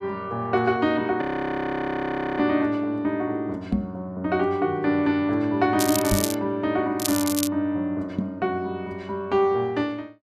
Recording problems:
audio freezing; at 1 s for 1 s
microphone thump; at 3.5 s, at 6 s and at 8 s; peak +4 dB vs average level
crackling; at 6 s and at 7 s; loose cable, SNR 4 dB

